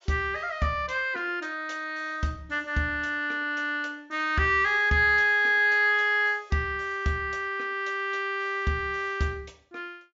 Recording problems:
low-pass filter; nothing above 7.3 kHz

